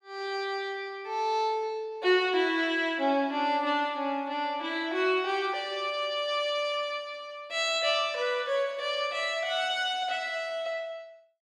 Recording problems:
none

